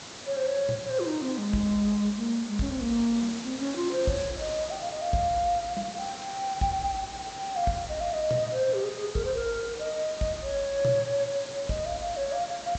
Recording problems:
treble missing; nothing above 8 kHz
background hiss; slope -2 dB per octave, SNR 11 dB

